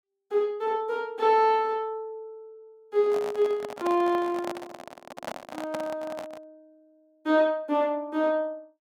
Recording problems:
handling noise; from 3 to 6.5 s; peak -3 dB vs average level

